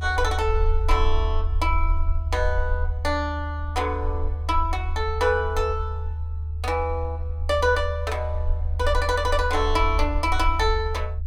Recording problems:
low-frequency rumble; below 78 Hz, SNR 2 dB

